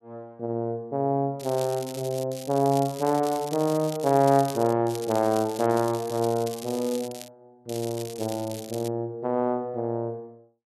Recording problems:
crackling; 4 times, first at 1.5 s; loose cable, SNR 15 dB

